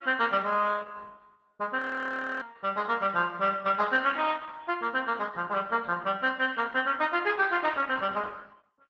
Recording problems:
lossy compression; Opus, log-spectral distance 4 dB
audio freezing; at 2 s for 0.5 s

